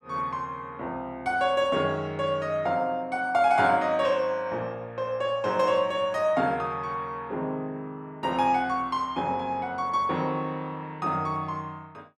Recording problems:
none

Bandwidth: 12.5 kHz